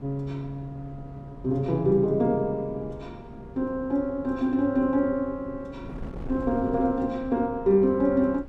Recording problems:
wind on the microphone; below 270 Hz, SNR 17 dB

